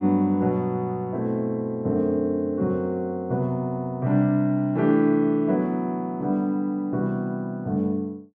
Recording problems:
low-pass filter; nothing above 8 kHz

